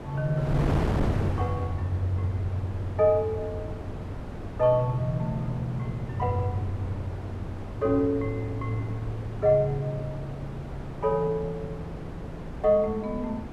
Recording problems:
wind noise; below 430 Hz, SNR 7 dB

